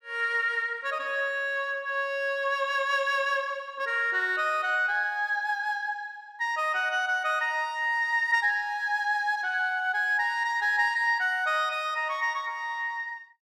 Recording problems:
none

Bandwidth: 14.5 kHz